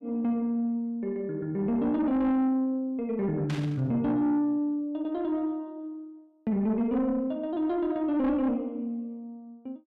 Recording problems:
distortion; soft clipping, signal-to-distortion ratio 11 dB
static burst; at 3.5 s; peak -7 dB vs average level

